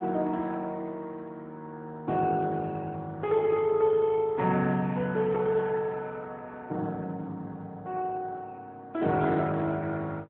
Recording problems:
phone line; 110 Hz to 3.7 kHz, AMR-NB

